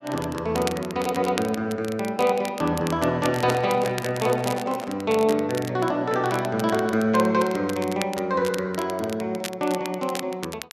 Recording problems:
crackle; vinyl, SNR 13 dB
microphone handling noise; from 3.5 to 5 s; peak -6 dB vs average level

